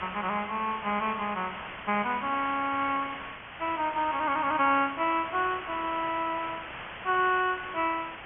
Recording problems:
treble cut off; nothing above 3.2 kHz
background hiss; SNR 10 dB

